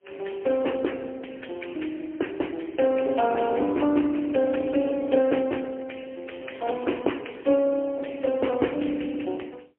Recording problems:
phone line; 240 Hz to 3.2 kHz, AMR-NB, then MP3

